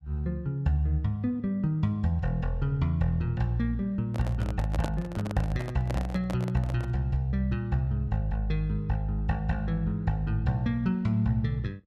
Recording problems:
handling noise; from 4 to 7 s; peak -1 dB vs average level

